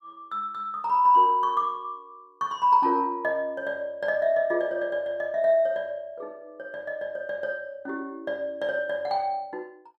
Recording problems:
none

